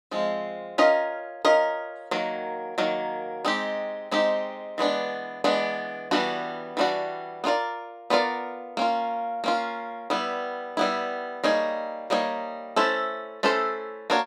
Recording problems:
none

